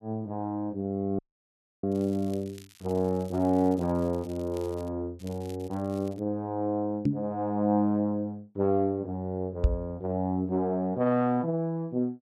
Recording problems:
audio cutting out; at 1 s for 0.5 s
crackling; from 2 to 5 s and from 5 to 6 s; loose cable, SNR 25 dB
microphone bump; at 7 s and at 9.5 s; peak +9 dB vs average level

